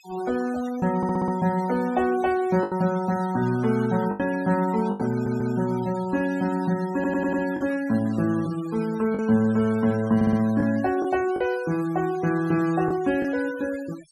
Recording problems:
noise reduction artefacts; signal-to-artefact ratio 19 dB
packet loss; 4% of the sound replaced, filled with the last packet
audio stuttering; 4 times, first at 1 s

